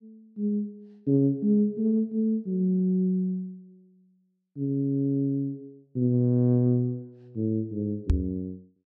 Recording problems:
microphone thump; at 8 s; peak +6 dB vs average level

